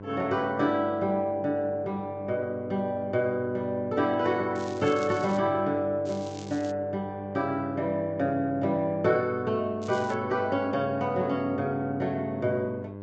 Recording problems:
treble missing; nothing above 8 kHz
codec artefacts; Vorbis, log-spectral distance 2 dB
hum; 50 Hz, harmonics up to 1.5 kHz, SNR 13 dB
crackle; at 4.5 s, at 6 s and at 10 s; loose cable, SNR 21 dB

